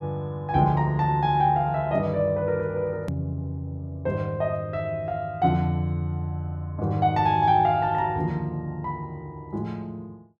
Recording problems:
edit click; at 3 s

